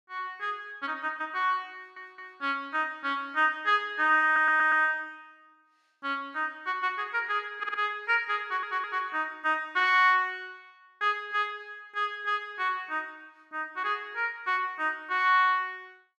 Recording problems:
stutter; 4 times, first at 2 s

